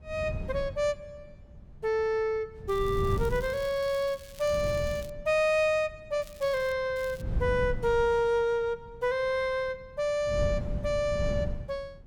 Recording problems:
wind on the microphone; below 140 Hz, SNR 8 dB
crackling; from 2.5 to 5 s, at 6 s and at 7 s; loose cable, SNR 22 dB

